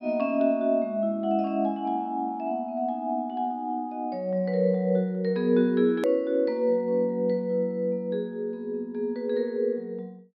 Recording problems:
treble missing; nothing above 5.5 kHz
hard cut with a click; at 6 s

